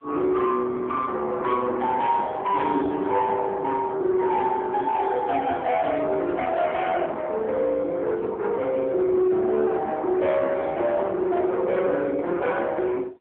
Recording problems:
phone line; 260 Hz to 3.4 kHz, AMR-NB
distorted audio; soft clipping, signal-to-distortion ratio 11 dB

